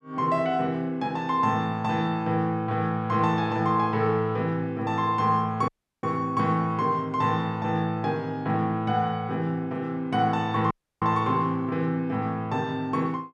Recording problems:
dropout; at 5.5 s and at 11 s

